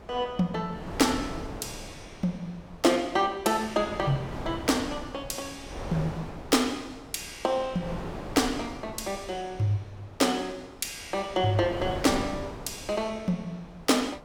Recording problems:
wind on the microphone; below 760 Hz, SNR 12 dB

